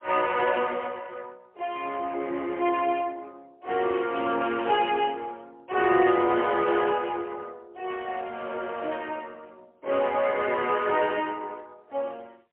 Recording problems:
phone line; 280 Hz to 3.2 kHz, AMR-NB, then MP3

